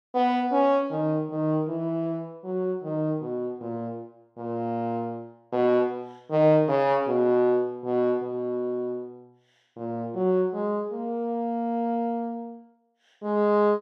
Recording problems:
none

